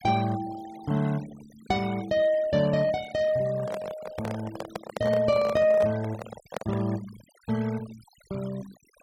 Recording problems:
denoising artefacts; signal-to-artefact ratio 20 dB
microphone handling noise; from 3.5 to 7 s; peak -2 dB vs average level

